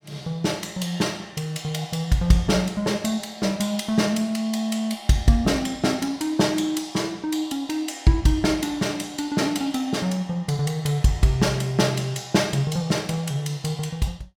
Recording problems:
none

